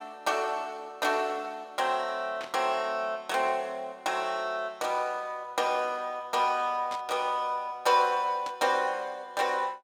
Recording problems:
burst of static; at 2.5 s, at 7 s and at 8.5 s; peak -7 dB vs average level

